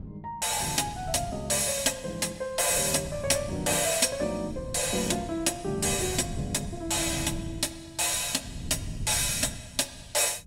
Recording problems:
wind noise; below 170 Hz, SNR 14 dB

